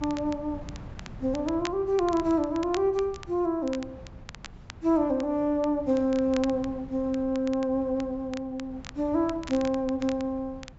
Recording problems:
treble missing; nothing above 8 kHz
wind on the microphone; below 200 Hz, SNR 19 dB
crackling; vinyl, SNR 19 dB

